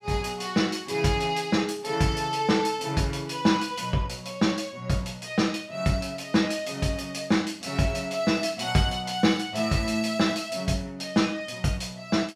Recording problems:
none

